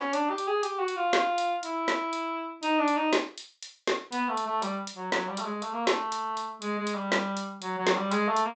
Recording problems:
low-pass filter; nothing above 8 kHz

